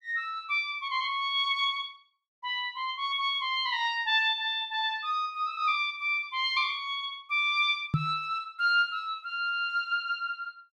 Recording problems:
microphone thump; at 8 s; peak +5 dB vs average level

